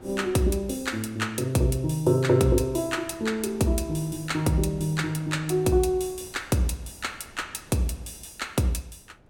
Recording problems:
wind noise; below 520 Hz, SNR 25 dB

